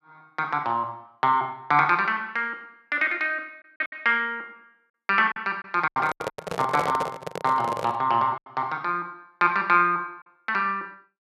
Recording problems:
packet loss; 6% of the sound replaced, filled with silence
handling noise; from 6 to 8 s; peak -1 dB vs average level

